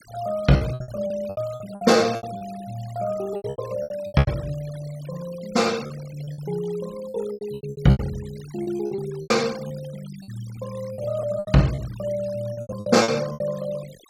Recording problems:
denoising artefacts; signal-to-artefact ratio 19 dB
packet loss; 15% of the sound replaced, filled with repeated pitch periods

